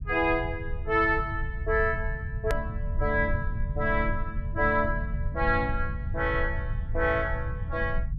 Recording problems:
low-frequency rumble; below 92 Hz, SNR 5 dB
click at an edit; at 2.5 s

